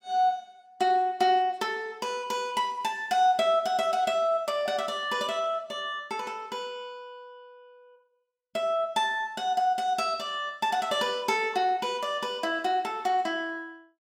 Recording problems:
none

